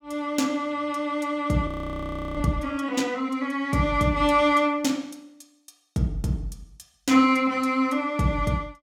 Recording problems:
audio freezing; at 1.5 s for 0.5 s

